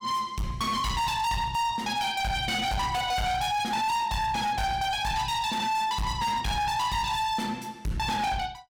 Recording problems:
distorted audio; hard clipping, signal-to-distortion ratio 7 dB

